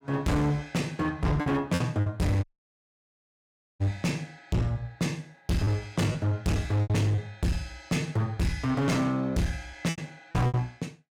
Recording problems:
distortion; hard clipping, uneven, signal-to-distortion ratio 6 dB
lost packets; 6% of the sound replaced, filled with repeated pitch periods
dropout; at 2.5 s for 1.5 s

